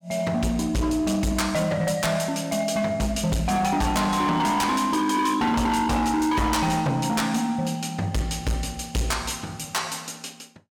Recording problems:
distortion; hard clipping, signal-to-distortion ratio 8 dB

